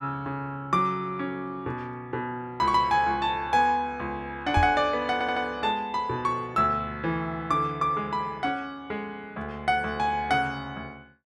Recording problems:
microphone thump; at 4.5 s; peak +4 dB vs average level
audio stuttering; at 5 s

